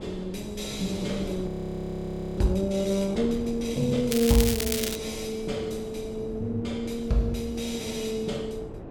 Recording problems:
wind on the microphone; below 420 Hz, SNR 11 dB
frozen audio; at 1.5 s for 1 s
crackling; at 4 s; loose cable, SNR 2 dB

